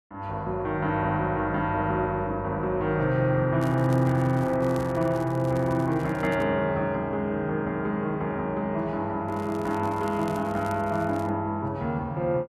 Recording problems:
crackle; from 3.5 to 6.5 s and from 9.5 to 11 s; loose cable, SNR 24 dB

